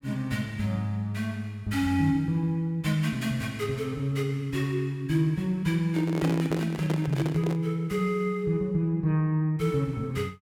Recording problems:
microphone handling noise; from 6 to 7.5 s; peak +1 dB vs average level

